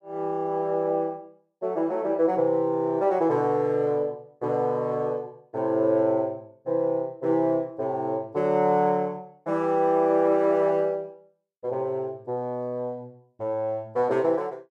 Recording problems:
none

